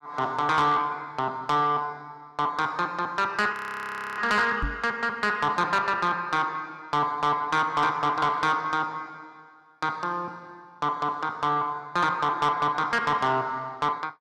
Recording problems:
distorted audio; soft clipping, signal-to-distortion ratio 11 dB
frozen audio; at 3.5 s for 0.5 s
knock on the microphone; at 4.5 s; peak -1 dB vs average level

